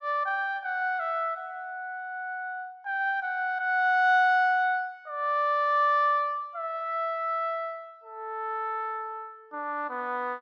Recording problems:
none

